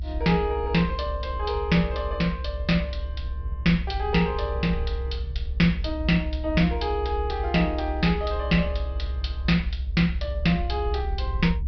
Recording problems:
treble missing; nothing above 5.5 kHz
rumble; below 68 Hz, strongest tone 66 Hz, SNR 5 dB

